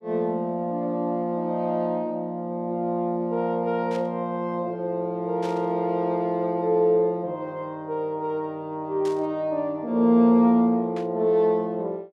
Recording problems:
static burst; 4 times, first at 4 s; peak -13 dB vs average level

